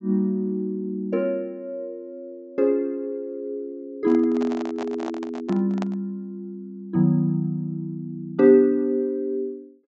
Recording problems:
treble cut off; nothing above 8 kHz
microphone handling noise; from 4 to 6 s; peak -6 dB vs average level

